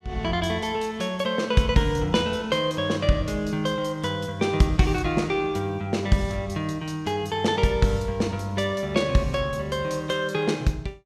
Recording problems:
none

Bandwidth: 14.5 kHz